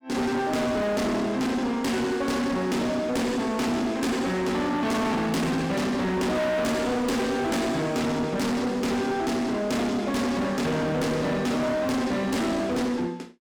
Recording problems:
distortion; hard clipping, signal-to-distortion ratio 7 dB

